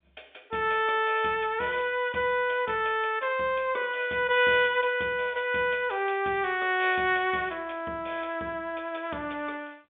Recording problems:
phone line; 190 Hz to 3.6 kHz, G.711

